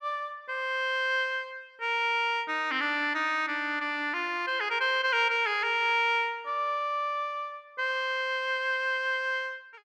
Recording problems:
none

